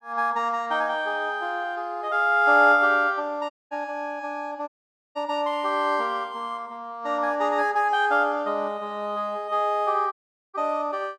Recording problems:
dropout; at 3.5 s, at 4.5 s and at 10 s

